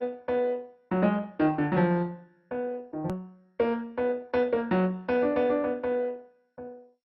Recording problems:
codec artefacts; MP2, log-spectral distance 2 dB, nothing above 13.1 kHz
hard cut with a click; at 3 s

